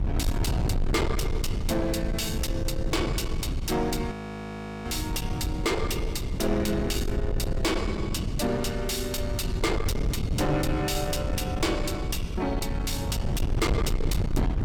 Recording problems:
distortion; soft clipping, signal-to-distortion ratio 6 dB
low-frequency rumble; below 140 Hz, SNR 2 dB
wind noise; below 190 Hz, SNR 8 dB
frozen audio; at 4 s for 0.5 s

